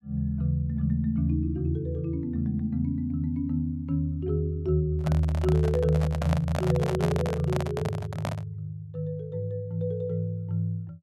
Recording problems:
handling noise; from 5 to 8.5 s; peak +1 dB vs average level

